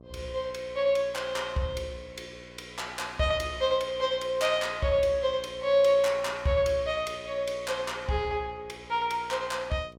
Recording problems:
hum; 60 Hz, harmonics up to 1.2 kHz, SNR 23 dB

